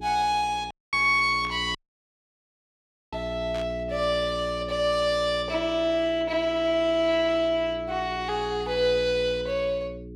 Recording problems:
mains hum; 60 Hz, harmonics up to 420 Hz, SNR 15 dB
dropout; at 0.5 s and at 2 s for 1.5 s
static burst; at 1.5 s and at 3.5 s; peak -12 dB vs average level

